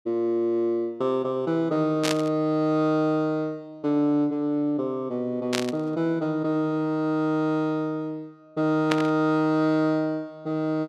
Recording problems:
static burst; at 2 s, at 5.5 s and at 9 s; peak +2 dB vs average level

